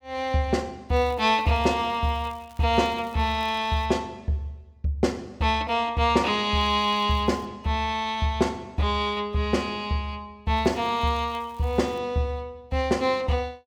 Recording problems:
crackle; from 1 to 4 s, at 6.5 s and from 11 to 12 s; loose cable, SNR 29 dB

